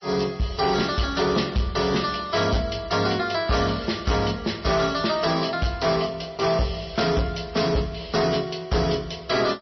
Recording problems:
codec artefacts; MP3, log-spectral distance 7 dB, nothing above 5.8 kHz
distorted audio; hard clipping, signal-to-distortion ratio 11 dB

